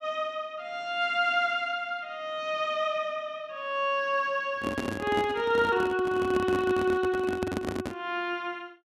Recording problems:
microphone handling noise; from 4.5 to 8 s; peak +1 dB vs average level

